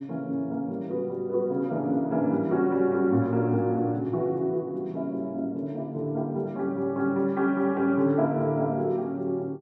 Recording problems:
none

